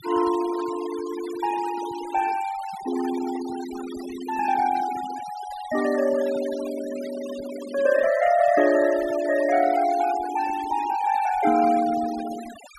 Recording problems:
denoising artefacts; signal-to-artefact ratio 14 dB

